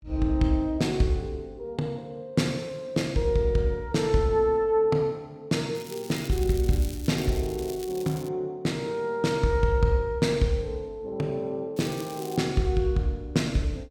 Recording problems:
crackle; from 6 to 8.5 s and at 12 s; loose cable, SNR 17 dB

